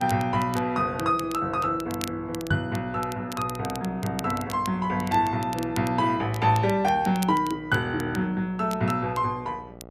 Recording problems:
hum; 60 Hz, harmonics up to 1.4 kHz, SNR 19 dB
crackling; vinyl, SNR 17 dB
microphone bump; at 2.5 s; peak +4 dB vs average level

